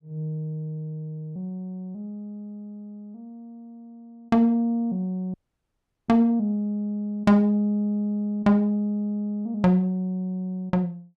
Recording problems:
audio cutting out; at 5.5 s for 0.5 s

